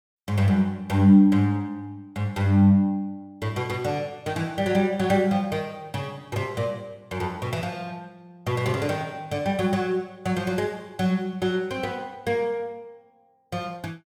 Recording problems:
none

